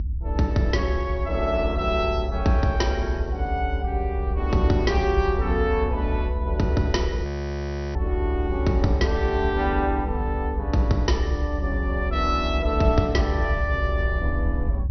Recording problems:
treble cut off; nothing above 5.9 kHz
low-frequency rumble; below 70 Hz, SNR 2 dB
frozen audio; at 7.5 s for 0.5 s

